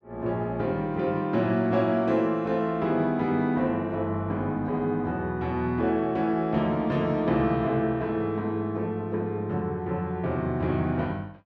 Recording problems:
none

